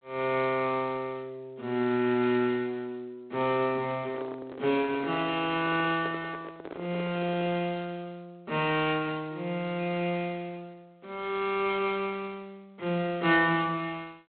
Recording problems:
phone line; 220 Hz to 4 kHz, G.726
microphone handling noise; from 4 to 7.5 s; peak -6 dB vs average level

